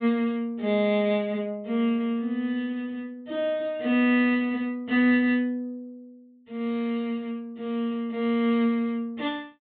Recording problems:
low-pass filter; nothing above 4 kHz

